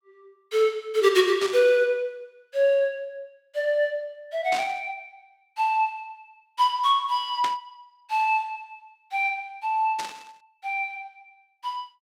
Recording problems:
static burst; 4 times, first at 1.5 s; peak -3 dB vs average level

